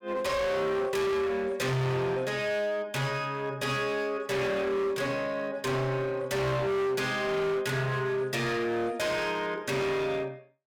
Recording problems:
distortion; hard clipping, signal-to-distortion ratio 7 dB

